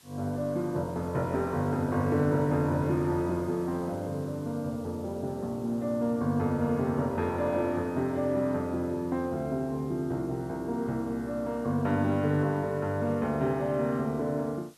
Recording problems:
background hiss; slope 0 dB per octave, SNR 27 dB

